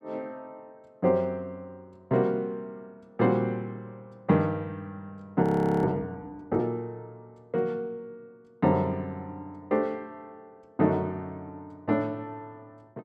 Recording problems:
frozen audio; at 5.5 s

